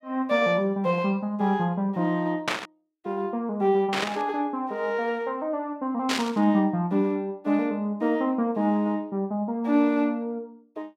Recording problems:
burst of static; at 2.5 s, at 4 s and at 6 s; peak +4 dB vs average level

